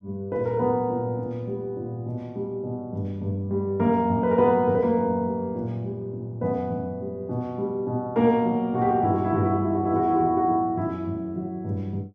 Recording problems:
none

